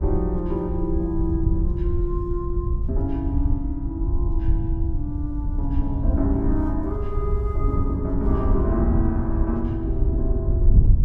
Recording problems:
wind noise; below 86 Hz, SNR -3 dB

